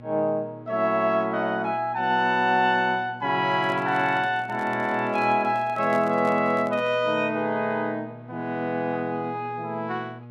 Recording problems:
hum; 60 Hz, harmonics up to 1.1 kHz, SNR 20 dB
handling noise; from 3.5 to 7 s; peak -9 dB vs average level

